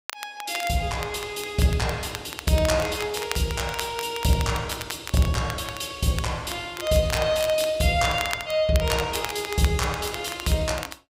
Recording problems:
crackle; vinyl, SNR 11 dB

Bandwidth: 15.5 kHz